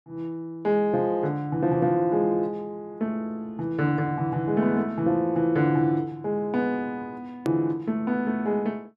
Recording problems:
edit click; at 7.5 s

